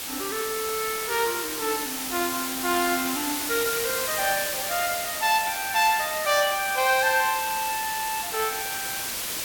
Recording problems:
background hiss; slope 0 dB per octave, SNR 3 dB

